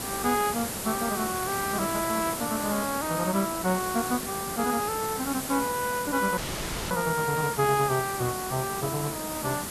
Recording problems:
hiss; slope -3 dB per octave, SNR 4 dB
audio cutting out; at 6.5 s for 0.5 s

